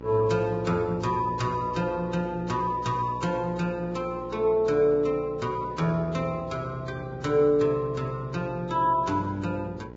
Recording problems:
codec artefacts; Vorbis, log-spectral distance 2 dB, nothing above 7.3 kHz
electrical hum; 60 Hz, harmonics up to 1.9 kHz, SNR 15 dB

